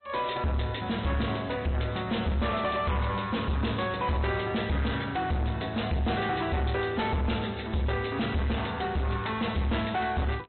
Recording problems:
low-pass filter; nothing above 4 kHz
lossy compression; MP3, log-spectral distance 6 dB
distorted audio; soft clipping, signal-to-distortion ratio 7 dB
crackling; vinyl, SNR 27 dB

